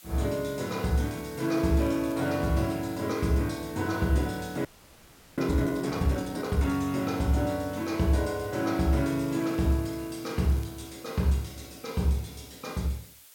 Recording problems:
background hiss; slope +2 dB per octave, SNR 21 dB
crackling; from 1 to 2.5 s and from 9 to 11 s; loose cable, SNR 26 dB
audio freezing; at 4.5 s for 0.5 s

